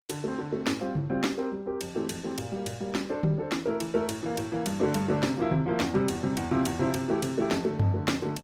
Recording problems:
lossy codec; Opus, log-spectral distance 3 dB

